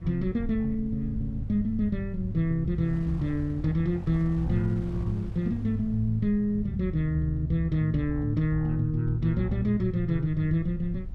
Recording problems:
rumble; below 70 Hz, SNR 14 dB
wind on the microphone; below 590 Hz, SNR 25 dB

